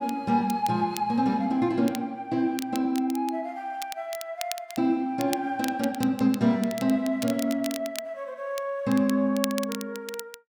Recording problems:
crackle; vinyl, SNR 13 dB

